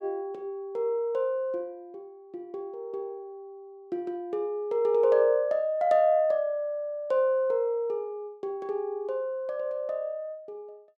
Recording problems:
none

